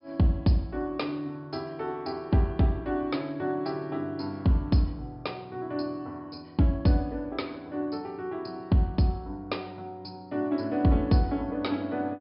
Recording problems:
treble missing; nothing above 5.5 kHz

